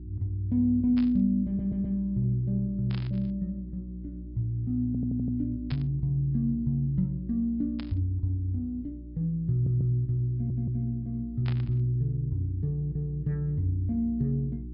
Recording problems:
low-pass filter; nothing above 5.5 kHz
hum; 60 Hz, harmonics up to 360 Hz, SNR 13 dB
static burst; 5 times, first at 1 s; peak -8 dB vs average level
audio stuttering; 4 times, first at 1.5 s

